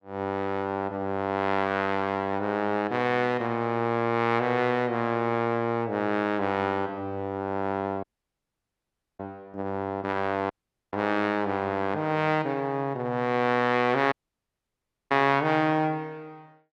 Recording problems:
audio cutting out; at 8 s for 1 s, at 11 s and at 14 s for 1 s

